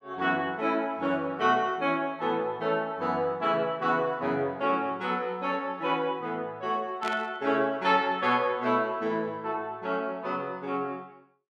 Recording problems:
burst of static; at 7 s; peak -4 dB vs average level

